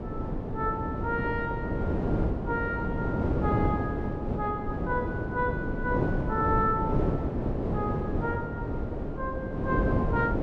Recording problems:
wind noise; below 410 Hz, SNR -2 dB

